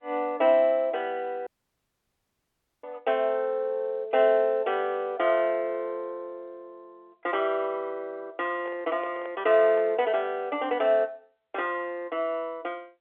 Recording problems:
telephone audio; 260 Hz to 3.4 kHz, G.711
dropout; at 1.5 s for 1.5 s
microphone handling noise; from 8.5 to 10 s; peak -11 dB vs average level

